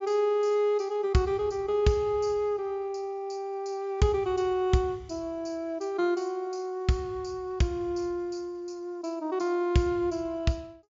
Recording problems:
low-pass filter; nothing above 8 kHz

